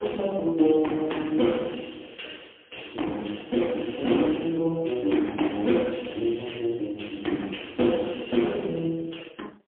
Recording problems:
phone line; 240 Hz to 3.4 kHz, AMR-NB, then MP3

